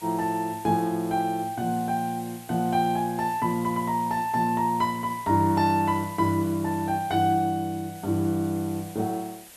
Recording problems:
background hiss; SNR 19 dB

